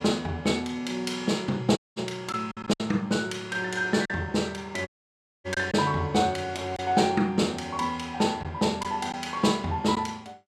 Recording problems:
lost packets; 3% of the sound replaced, filled with silence
dropout; at 2 s and at 5 s for 0.5 s

